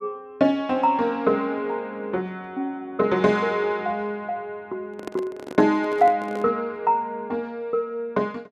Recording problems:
microphone handling noise; from 5 to 6.5 s; peak -5 dB vs average level

